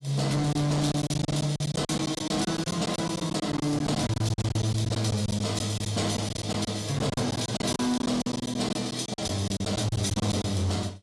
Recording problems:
lossy compression; AAC, log-spectral distance 4 dB, nothing above 11 kHz
distortion; hard clipping, signal-to-distortion ratio 11 dB
packet loss; 15% of the sound replaced, filled with silence

